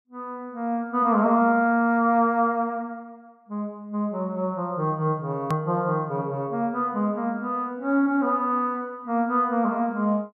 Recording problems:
edit click; at 5.5 s

